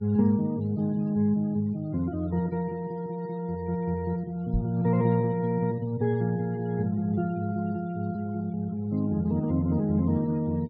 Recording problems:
treble cut off; nothing above 5.2 kHz
noise reduction artefacts; signal-to-artefact ratio 27 dB
microphone bump; at 4.5 s; peak +2 dB vs average level

